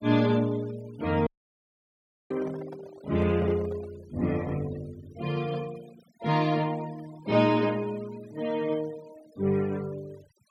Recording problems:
denoising artefacts; signal-to-artefact ratio 22 dB
dropout; at 1.5 s for 1 s
handling noise; from 2.5 to 4 s; peak -9 dB vs average level

